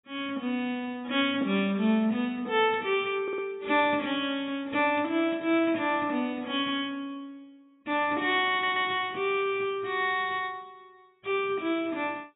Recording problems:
lossy codec; AAC, log-spectral distance 3 dB, nothing above 3.4 kHz
stutter; at 3 s and at 8.5 s

